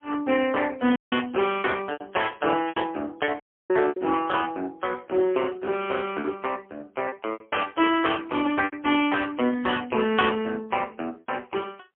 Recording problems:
telephone audio; 220 Hz to 3.3 kHz, AMR-NB, then MP3
lost packets; 5% of the sound replaced, filled with repeated pitch periods
audio cutting out; at 1 s and at 3.5 s

